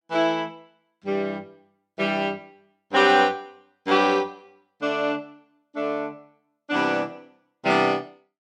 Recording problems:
none

